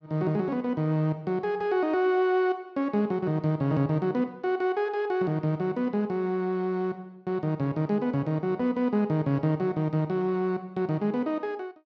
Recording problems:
none

